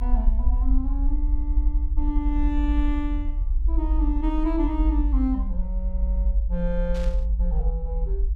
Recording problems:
rumble; below 52 Hz, SNR -5 dB
static burst; at 7 s; peak -9 dB vs average level

